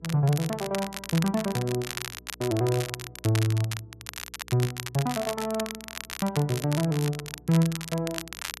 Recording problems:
hum; 60 Hz, harmonics up to 480 Hz, SNR 26 dB
crackling; vinyl, SNR 9 dB

